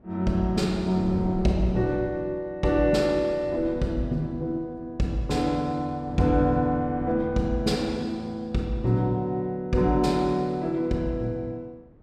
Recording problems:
wind noise; below 330 Hz, SNR 14 dB

